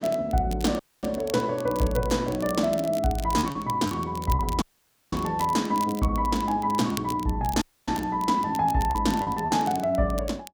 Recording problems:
crackling; vinyl, SNR 17 dB
lost packets; 4% of the sound replaced, filled with repeated pitch periods
audio cutting out; at 1 s, at 4.5 s for 0.5 s and at 7.5 s

